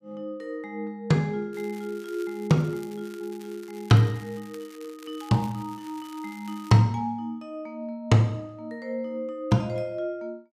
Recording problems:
crackle; from 1.5 to 7 s; loose cable, SNR 23 dB

